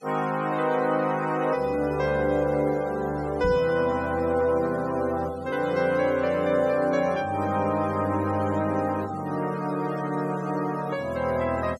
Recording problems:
denoising artefacts; signal-to-artefact ratio 20 dB
microphone thump; at 3.5 s; peak -4 dB vs average level

